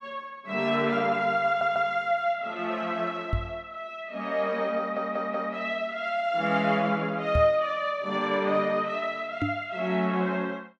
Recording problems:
audio stuttering; at 1.5 s and at 5 s
knock on the microphone; at 3.5 s, at 7.5 s and at 9.5 s; peak +3 dB vs average level

